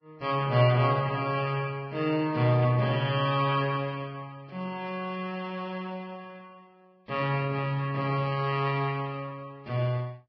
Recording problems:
lossy codec; Vorbis, log-spectral distance 3 dB, nothing above 5.2 kHz

